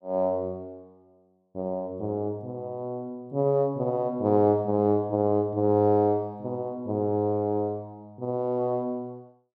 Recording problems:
none

